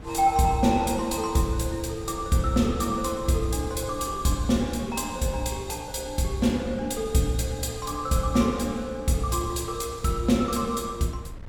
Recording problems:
wind noise; below 160 Hz, SNR 17 dB

